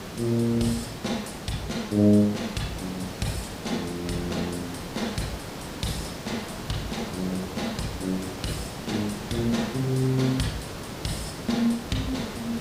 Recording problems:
background hiss; slope -5 dB per octave, SNR 8 dB

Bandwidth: 15.5 kHz